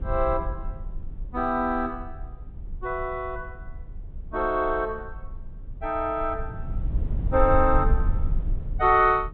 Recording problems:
treble missing; nothing above 4 kHz
rumble; below 62 Hz, SNR 8 dB

